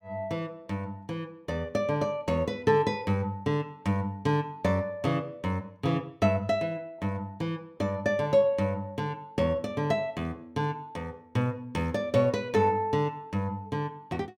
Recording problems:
none

